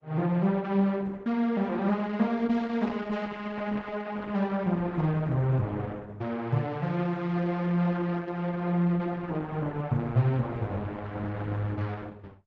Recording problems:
lossy compression; Opus, log-spectral distance 3 dB

